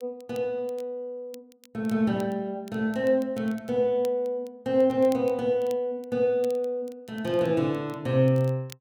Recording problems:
crackle; vinyl, SNR 27 dB

